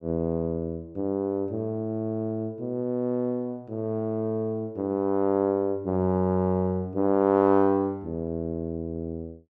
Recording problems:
none

